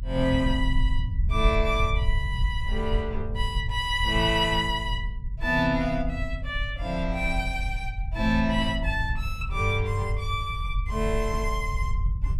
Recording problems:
low-frequency rumble; below 70 Hz, SNR 3 dB

